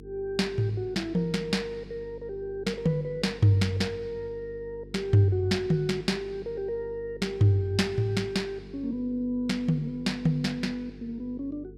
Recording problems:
mains hum; 50 Hz, harmonics up to 450 Hz, SNR 18 dB

